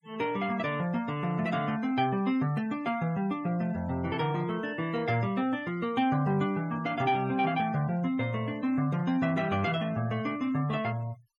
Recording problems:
noise reduction artefacts; signal-to-artefact ratio 21 dB

